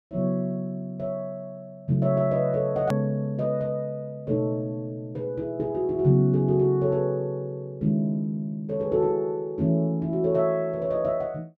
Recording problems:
click at an edit; at 3 s

